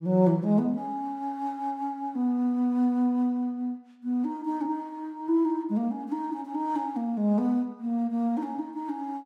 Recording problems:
none

